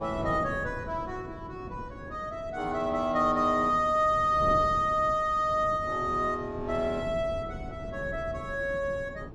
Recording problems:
wind on the microphone; below 320 Hz, SNR 14 dB

